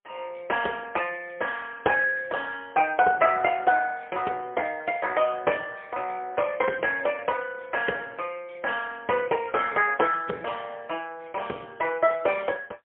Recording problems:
phone line; 300 Hz to 3.3 kHz, AMR-NB, then MP3

